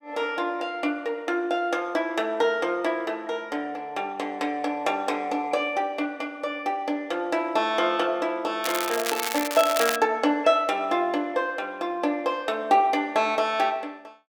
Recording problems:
crackling; from 8.5 to 10 s; loose cable, SNR 4 dB

